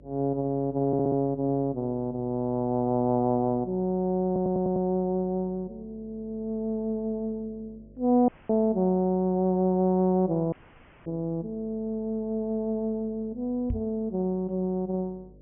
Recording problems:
low-pass filter; nothing above 3.1 kHz
hum; 50 Hz, harmonics up to 600 Hz, SNR 25 dB
stutter; at 1 s and at 4.5 s
audio cutting out; at 8.5 s and at 11 s for 0.5 s
microphone bump; at 14 s; peak 0 dB vs average level

